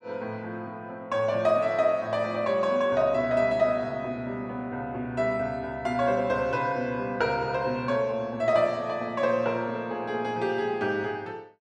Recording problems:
none

